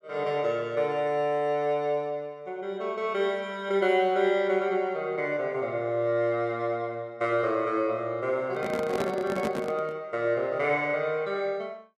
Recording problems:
microphone handling noise; from 8.5 to 10 s; peak +1 dB vs average level

